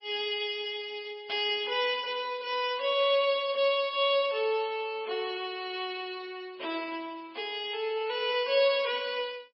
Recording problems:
codec artefacts; MP3, log-spectral distance 3 dB, nothing above 4.6 kHz
crackle; from 2 to 4.5 s; loose cable, SNR 25 dB

